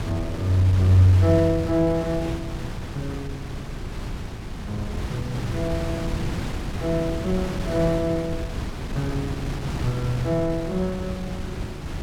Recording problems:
wind on the microphone; below 310 Hz, SNR 7 dB

